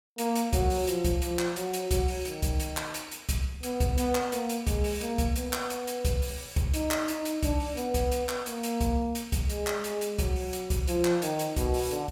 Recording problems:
none

